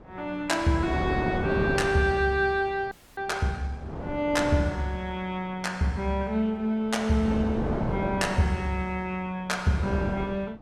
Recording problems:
wind on the microphone; below 580 Hz, SNR 6 dB
audio freezing; at 3 s

